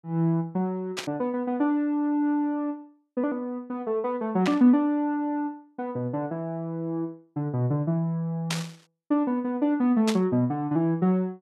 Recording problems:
static burst; 4 times, first at 1 s; peak +1 dB vs average level

